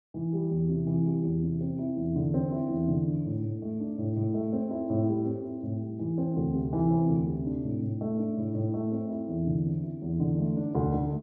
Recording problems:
none

